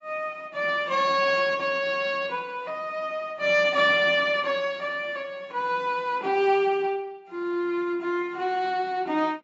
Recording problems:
lossy compression; AAC, log-spectral distance 2 dB, nothing above 7.1 kHz

